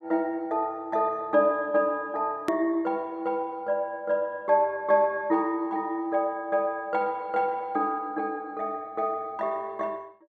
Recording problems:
hard cut with a click; at 2.5 s

